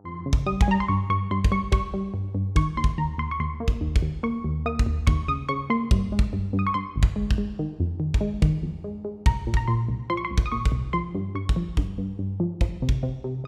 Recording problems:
electrical hum; 50 Hz, harmonics up to 1.2 kHz, SNR 28 dB

